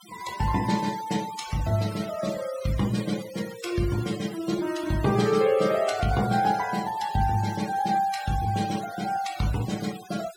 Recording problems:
noise reduction artefacts; signal-to-artefact ratio 15 dB

